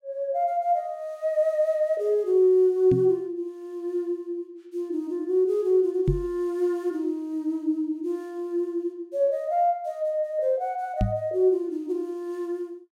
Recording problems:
microphone bump; at 3 s, at 6 s and at 11 s; peak +5 dB vs average level

